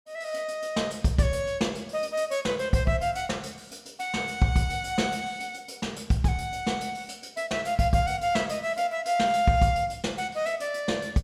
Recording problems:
none

